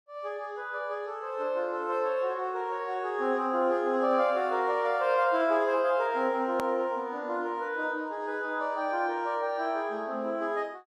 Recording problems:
hard cut with a click; at 6.5 s

